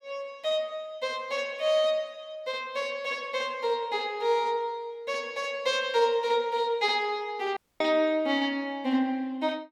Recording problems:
audio cutting out; at 7.5 s

